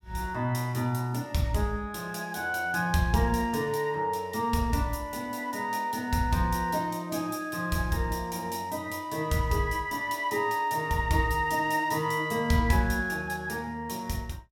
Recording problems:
none

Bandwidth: 17.5 kHz